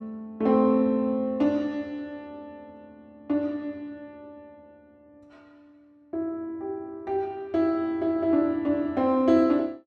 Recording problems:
none

